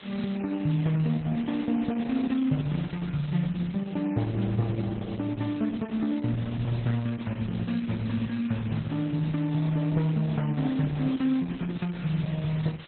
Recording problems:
lossy codec; MP3, then Opus, log-spectral distance 11 dB, nothing above 4 kHz
hiss; SNR 19 dB

